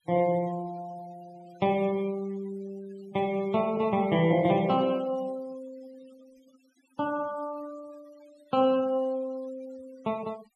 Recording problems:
noise reduction artefacts; signal-to-artefact ratio 24 dB

